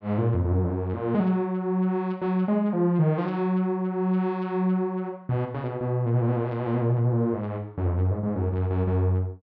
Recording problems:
none

